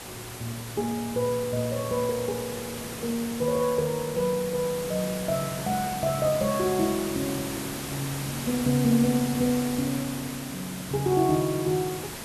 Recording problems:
hiss; slope -3 dB per octave, SNR 8 dB

